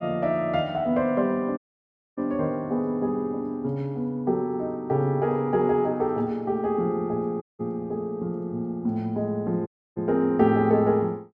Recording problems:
dropout; at 1.5 s for 0.5 s, at 7.5 s and at 9.5 s

